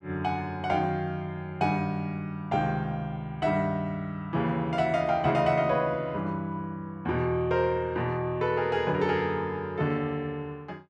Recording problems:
none

